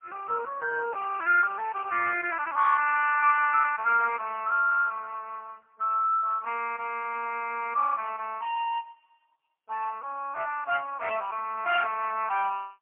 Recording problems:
telephone audio; 410 Hz to 2.7 kHz, AMR-NB, then MP3

